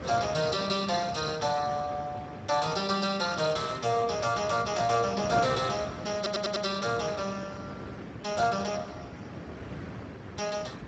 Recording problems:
lossy codec; Speex, log-spectral distance 6 dB
wind noise; below 690 Hz, SNR 11 dB
audio stuttering; at 6 s

